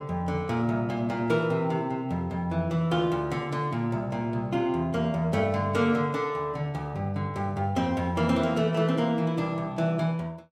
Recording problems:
none

